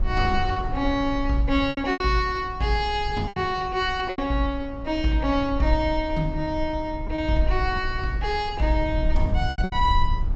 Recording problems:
treble missing; nothing above 8 kHz
low-frequency rumble; below 64 Hz, SNR 7 dB
wind on the microphone; below 200 Hz, SNR 16 dB
lost packets; 6% of the sound replaced, filled with repeated pitch periods

